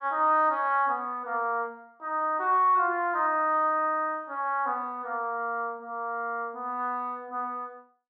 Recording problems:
none

